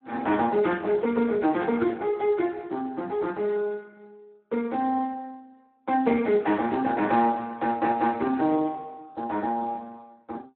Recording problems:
telephone audio; 190 Hz to 2.1 kHz, Speex

